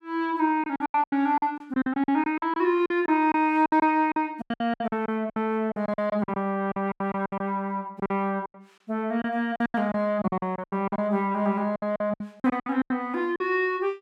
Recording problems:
lost packets; 17% of the sound replaced, filled with silence

